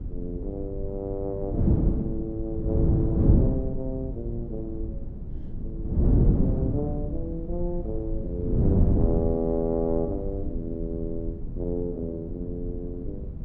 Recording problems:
low-frequency rumble; below 62 Hz, SNR 7 dB
wind noise; below 200 Hz, SNR -4 dB

